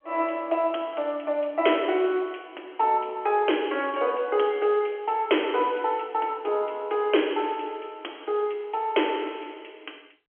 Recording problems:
phone line; 260 Hz to 3.3 kHz, G.711

